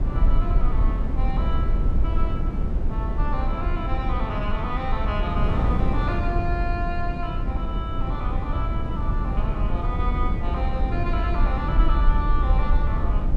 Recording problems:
low-frequency rumble; below 48 Hz, SNR -2 dB
wind on the microphone; below 150 Hz, SNR -4 dB

